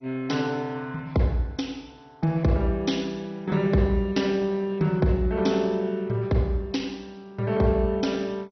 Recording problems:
lossy compression; MP2, log-spectral distance 3 dB, nothing above 6 kHz

